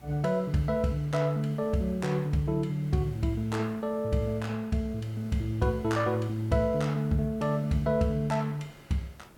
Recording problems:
hiss; slope -6 dB per octave, SNR 23 dB

